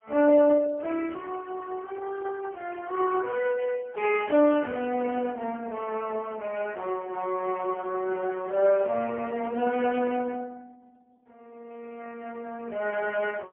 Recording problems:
telephone audio; 240 Hz to 2.6 kHz, AMR-NB, then MP3

